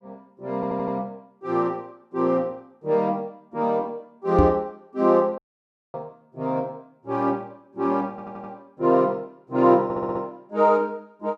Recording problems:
stutter; at 0.5 s, at 8 s and at 10 s
microphone bump; at 4.5 s; peak +7 dB vs average level
dropout; at 5.5 s for 0.5 s

